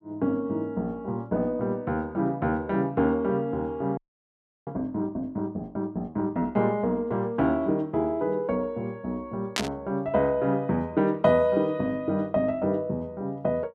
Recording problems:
frozen audio; at 4 s for 0.5 s
burst of static; at 9.5 s; peak +4 dB vs average level

